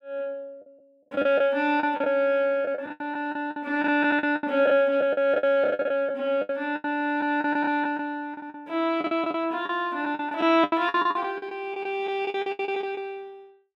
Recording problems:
packet loss; 16% of the sound replaced, filled with the last packet

